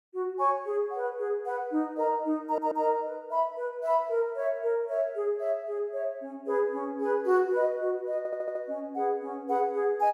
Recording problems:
stutter; at 2.5 s and at 8 s

